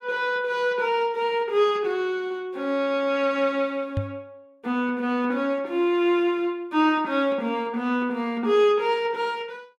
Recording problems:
microphone bump; at 4 s; peak +1 dB vs average level

